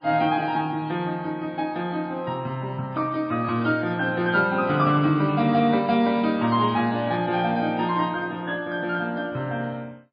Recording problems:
lossy codec; MP3, log-spectral distance 2 dB, nothing above 4.2 kHz

